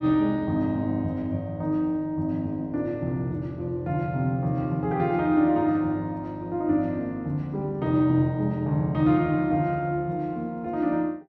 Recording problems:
none

